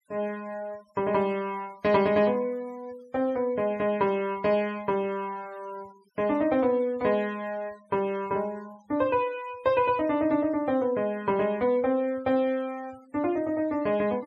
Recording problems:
noise reduction artefacts; signal-to-artefact ratio 25 dB

